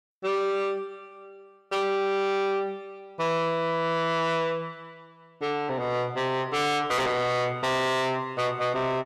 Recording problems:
distorted audio; soft clipping, signal-to-distortion ratio 8 dB

